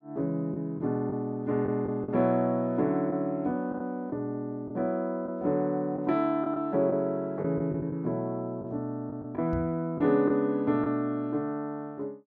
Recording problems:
lost packets; 5% of the sound replaced, filled with the last packet
knock on the microphone; at 9.5 s; peak -2 dB vs average level

